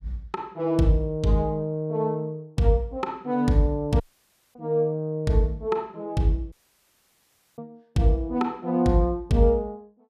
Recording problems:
audio cutting out; at 4 s for 0.5 s and at 6.5 s for 1 s

